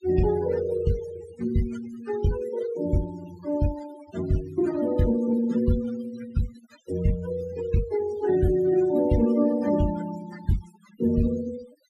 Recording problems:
noise reduction artefacts; signal-to-artefact ratio 14 dB

